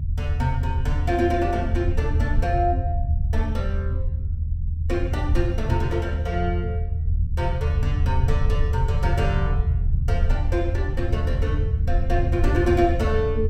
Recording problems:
low-frequency rumble; below 82 Hz, SNR -2 dB

